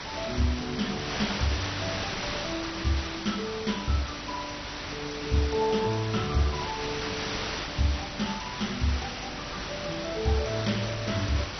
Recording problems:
codec artefacts; MP2, log-spectral distance 14 dB, nothing above 6 kHz
hum; 50 Hz, harmonics up to 300 Hz, SNR 18 dB
hiss; slope -1 dB per octave, SNR 3 dB

